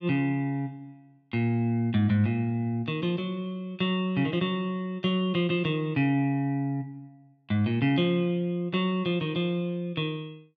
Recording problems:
none

